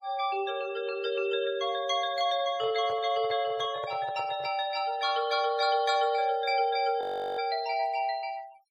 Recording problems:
denoising artefacts; signal-to-artefact ratio 22 dB
microphone handling noise; from 2.5 to 4.5 s; peak -7 dB vs average level
frozen audio; at 7 s

